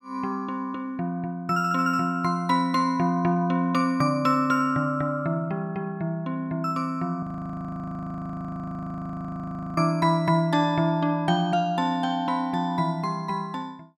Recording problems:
frozen audio; at 7 s for 2.5 s

